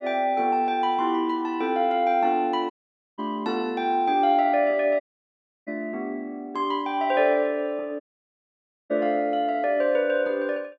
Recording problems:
audio cutting out; at 2.5 s, at 5 s for 0.5 s and at 8 s for 1 s

